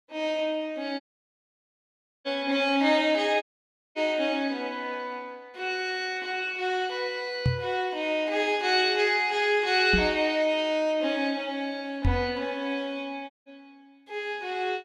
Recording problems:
audio cutting out; at 1 s for 1 s, at 3.5 s for 0.5 s and at 13 s
microphone thump; at 7.5 s, at 10 s and at 12 s; peak +5 dB vs average level

